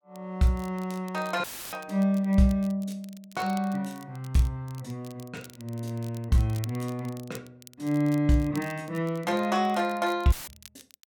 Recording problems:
crackle; vinyl, SNR 22 dB
dropout; at 1.5 s and at 10 s; filled with static

